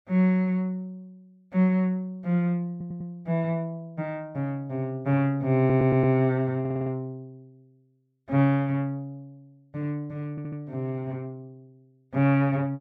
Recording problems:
stutter; 4 times, first at 2.5 s

